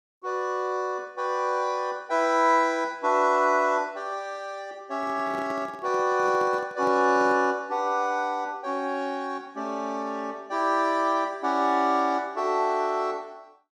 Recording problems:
handling noise; from 5 to 7.5 s; peak -10 dB vs average level

